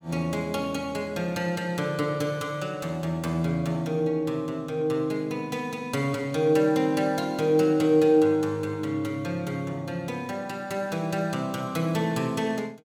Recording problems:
none

